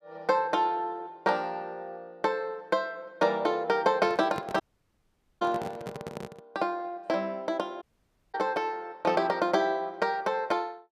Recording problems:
microphone handling noise; from 4 to 6.5 s; peak -3 dB vs average level
dropout; at 4.5 s for 1 s and at 8 s for 0.5 s

